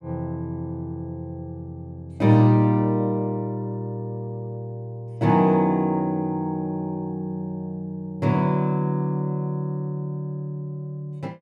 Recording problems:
none

